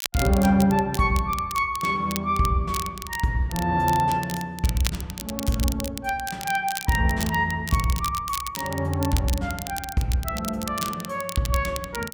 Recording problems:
crackle; vinyl, SNR 10 dB

